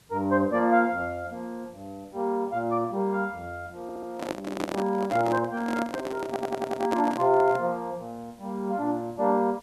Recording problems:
hiss; slope -2 dB per octave, SNR 30 dB
audio stuttering; at 4 s and at 6.5 s
microphone handling noise; from 4 to 7.5 s; peak +1 dB vs average level

